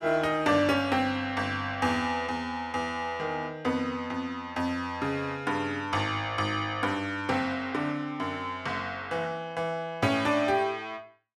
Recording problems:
none

